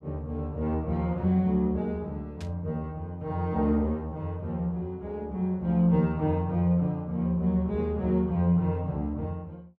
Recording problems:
burst of static; at 2.5 s; peak -14 dB vs average level

